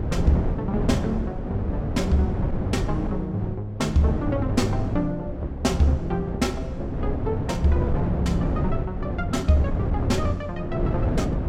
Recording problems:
wind noise; below 250 Hz, SNR 2 dB

